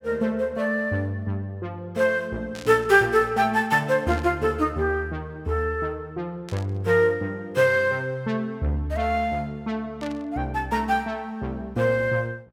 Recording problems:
static burst; 4 times, first at 2.5 s; peak -12 dB vs average level

